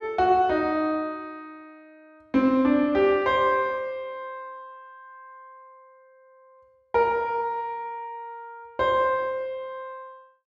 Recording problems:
none

